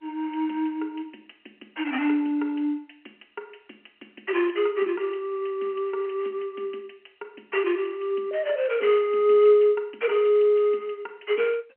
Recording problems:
telephone audio; 240 Hz to 3.1 kHz, G.711

